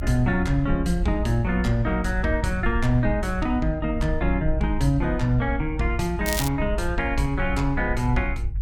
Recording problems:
rumble; below 62 Hz, SNR 5 dB
crackle; at 6.5 s; loose cable, SNR 6 dB

